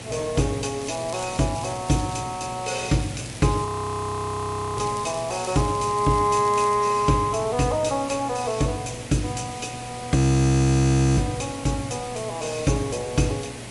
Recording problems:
lossy compression; MP3, log-spectral distance 8 dB
hum; 60 Hz, harmonics up to 840 Hz, SNR 18 dB
hiss; SNR 14 dB
crackle; from 1 to 2 s and from 3 to 7 s; loose cable, SNR 18 dB
audio freezing; at 3.5 s for 1 s and at 10 s for 1 s

